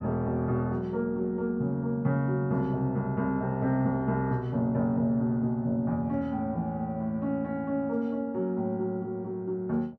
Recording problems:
none

